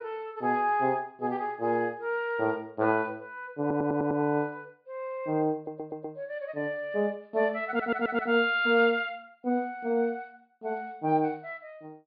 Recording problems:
treble cut off; nothing above 4.9 kHz
audio stuttering; at 3.5 s, at 5.5 s and at 7.5 s

